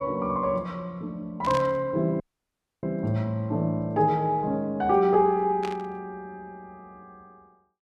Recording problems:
burst of static; at 1.5 s and at 5.5 s; peak -7 dB vs average level
audio cutting out; at 2 s for 0.5 s

